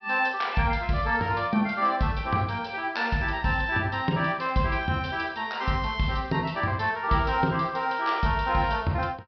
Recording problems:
treble cut off; nothing above 5.5 kHz

